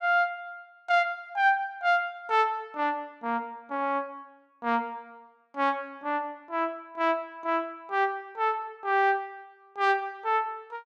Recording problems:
none

